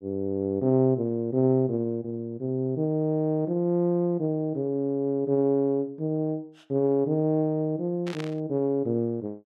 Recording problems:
static burst; at 8 s; peak -8 dB vs average level

